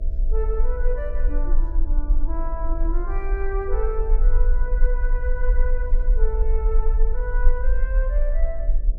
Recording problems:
electrical hum; 60 Hz, harmonics up to 660 Hz, SNR 14 dB
low-frequency rumble; below 40 Hz, strongest tone 24 Hz, SNR -8 dB

